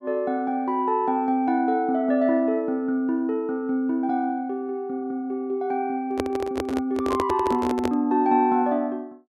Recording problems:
handling noise; from 6 to 8 s; peak +2 dB vs average level

